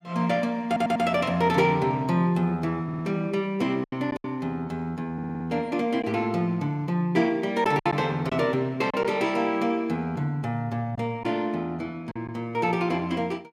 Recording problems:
packet loss; 3% of the sound replaced, filled with silence
stutter; at 0.5 s, at 3 s and at 5 s

